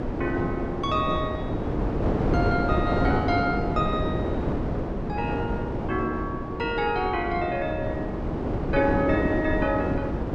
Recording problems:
wind noise; below 470 Hz, SNR 0 dB

